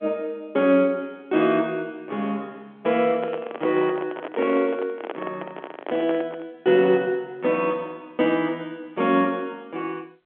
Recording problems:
phone line; 240 Hz to 3.4 kHz, G.711
microphone handling noise; from 3 to 6.5 s; peak -3 dB vs average level

